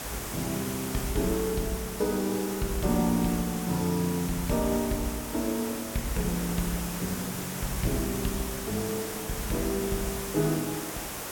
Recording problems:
background hiss; slope -3 dB per octave, SNR 5 dB

